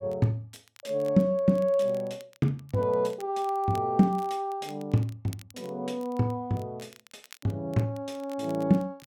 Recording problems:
crackling; vinyl, SNR 26 dB

